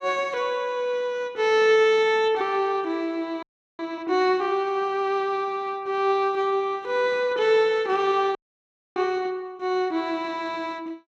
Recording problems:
audio freezing; at 3.5 s and at 8.5 s for 0.5 s

